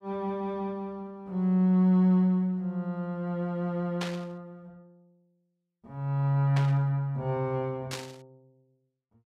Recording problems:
burst of static; at 4 s, at 6.5 s and at 8 s; peak -3 dB vs average level

